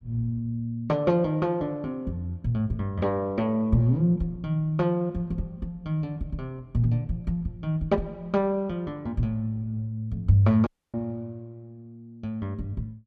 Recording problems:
audio cutting out; at 11 s

